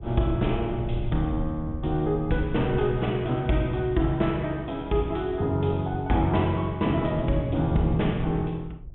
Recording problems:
treble cut off; nothing above 3.6 kHz
low-frequency rumble; below 98 Hz, SNR 13 dB

